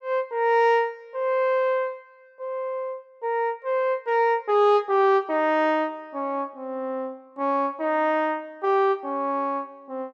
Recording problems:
none

